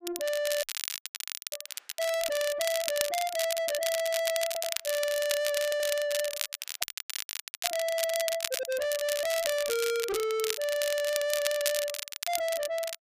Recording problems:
distortion; soft clipping, signal-to-distortion ratio 7 dB
crackle; vinyl, SNR 4 dB
dropout; at 0.5 s for 1 s and at 7 s for 1 s
audio stuttering; at 4.5 s, at 5.5 s and at 8.5 s

